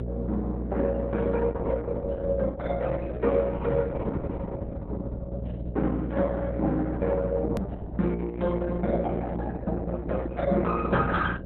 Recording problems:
codec artefacts; Opus, log-spectral distance 3 dB, nothing above 13.1 kHz
hum; 60 Hz, harmonics up to 660 Hz, SNR 7 dB
click at an edit; at 7.5 s

